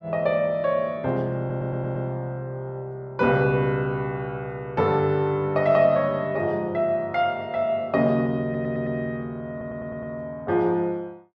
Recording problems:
audio stuttering; at 1.5 s, at 8.5 s and at 9.5 s

